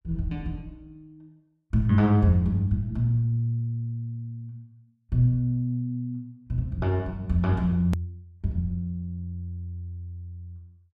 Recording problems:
hard cut with a click; at 8 s

